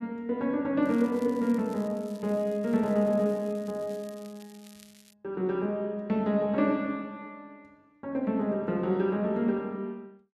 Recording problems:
crackling; from 1 to 5 s; loose cable, SNR 26 dB

